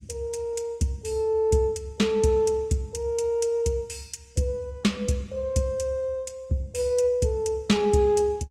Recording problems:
lossy codec; Opus, log-spectral distance 2 dB, nothing above 18.9 kHz

